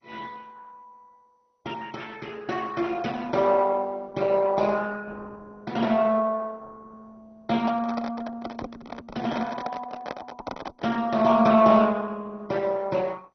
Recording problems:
lossy codec; Opus, then MP2, log-spectral distance 4 dB, nothing above 6 kHz
microphone handling noise; from 7.5 to 11 s; peak -4 dB vs average level

